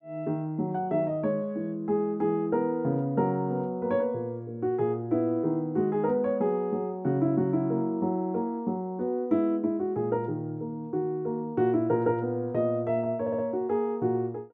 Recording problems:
audio stuttering; at 13 s

